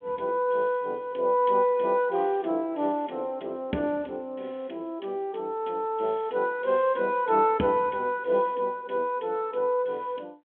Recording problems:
telephone audio; 170 Hz to 3.7 kHz, G.726

